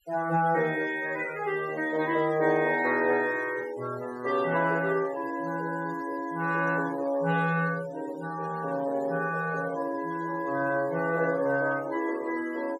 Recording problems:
noise reduction artefacts; signal-to-artefact ratio 19 dB

